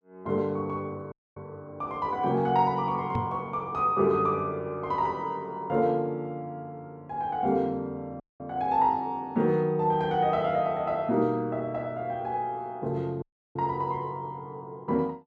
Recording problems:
audio cutting out; at 1 s, at 8 s and at 13 s
microphone bump; at 3 s; peak +1 dB vs average level

